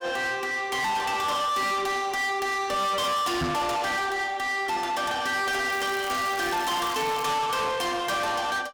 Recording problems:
distortion; soft clipping, signal-to-distortion ratio 7 dB
microphone bump; at 3.5 s; peak +2 dB vs average level
crackling; from 5.5 to 7 s; loose cable, SNR 12 dB

